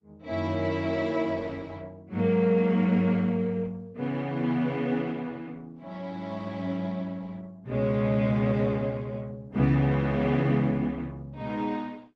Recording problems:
lossy codec; Opus, log-spectral distance 2 dB

